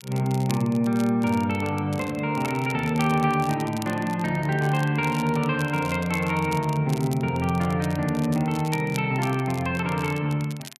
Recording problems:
crackle; vinyl, SNR 18 dB

